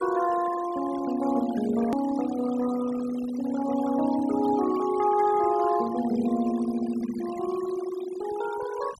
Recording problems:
denoising artefacts; signal-to-artefact ratio 15 dB
edit click; at 2 s

